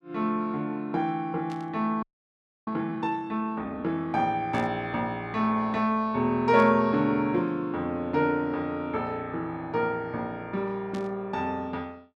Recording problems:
burst of static; 4 times, first at 1.5 s; peak -13 dB vs average level
audio freezing; at 2 s for 0.5 s

